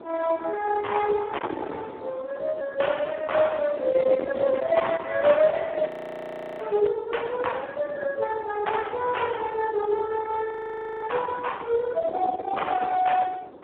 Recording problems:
telephone audio; 220 Hz to 3.4 kHz, Speex
distortion; soft clipping, signal-to-distortion ratio 11 dB
wind noise; below 740 Hz, SNR 12 dB
crackling; from 4 to 7 s; loose cable, SNR 25 dB
frozen audio; at 6 s for 0.5 s and at 11 s for 0.5 s

